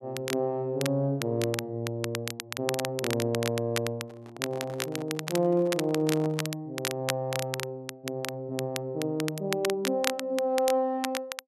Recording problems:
crackle; vinyl, SNR 6 dB
handling noise; from 4 to 6.5 s; peak -6 dB vs average level

